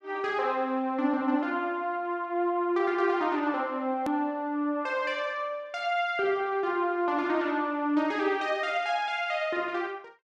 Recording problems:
click at an edit; at 4 s

